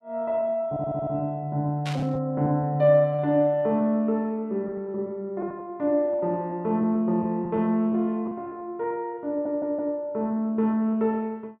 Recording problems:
lost packets; 6% of the sound replaced, filled with repeated pitch periods
stutter; at 0.5 s and at 9.5 s
static burst; at 2 s; peak -5 dB vs average level

